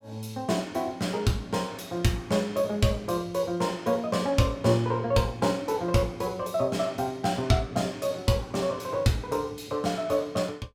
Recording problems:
none

